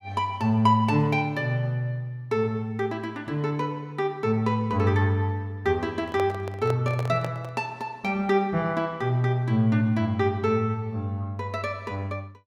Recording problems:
handling noise; from 6 to 7.5 s; peak -4 dB vs average level

